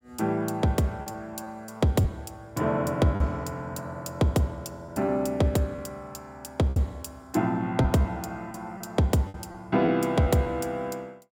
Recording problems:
packet loss; 5% of the sound replaced, filled with repeated pitch periods

